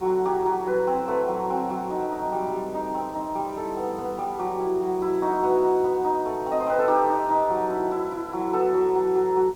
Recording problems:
background hiss; SNR 23 dB

